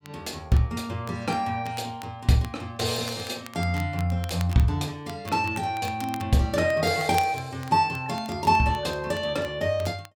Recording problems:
crackle; vinyl, SNR 20 dB

